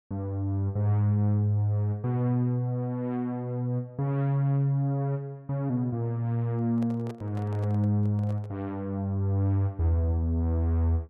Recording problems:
handling noise; from 6.5 to 8.5 s; peak -10 dB vs average level

